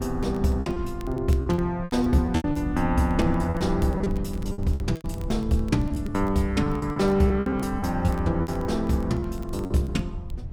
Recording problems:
rumble; below 110 Hz, SNR 9 dB
crackle; vinyl, SNR 29 dB
lost packets; 12% of the sound replaced, filled with repeated pitch periods

